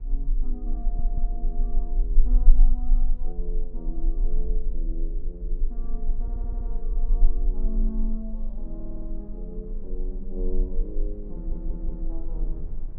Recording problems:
low-frequency rumble; below 32 Hz, strongest tone 18 Hz, SNR -11 dB
wind noise; below 190 Hz, SNR 9 dB
stutter; 4 times, first at 1 s

